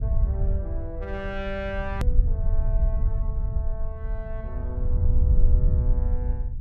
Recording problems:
low-frequency rumble; below 72 Hz, SNR -10 dB
hard cut with a click; at 2 s

